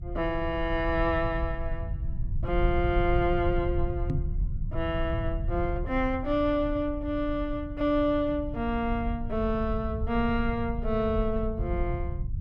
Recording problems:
rumble; below 88 Hz, SNR 5 dB
knock on the microphone; at 4 s; peak +5 dB vs average level

